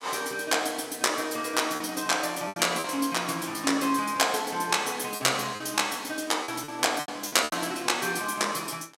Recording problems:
packet loss; 6% of the sound replaced, filled with repeated pitch periods

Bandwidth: 16 kHz